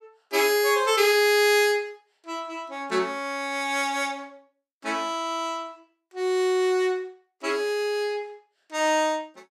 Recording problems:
none

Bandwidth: 15.5 kHz